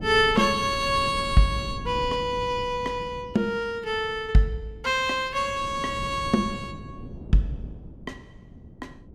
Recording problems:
wind on the microphone; below 230 Hz, SNR 15 dB

